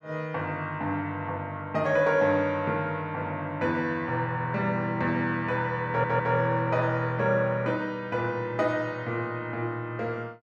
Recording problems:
audio stuttering; at 6 s

